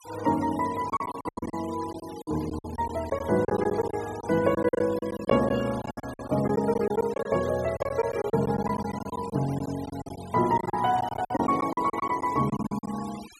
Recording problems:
denoising artefacts; signal-to-artefact ratio 18 dB
lost packets; 15% of the sound replaced, filled with silence

